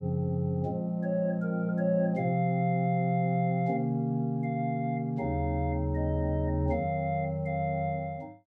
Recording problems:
none

